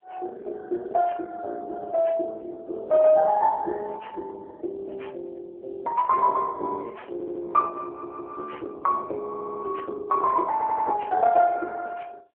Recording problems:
telephone audio; 320 Hz to 2.1 kHz, AMR-NB
audio stuttering; 4 times, first at 7 s

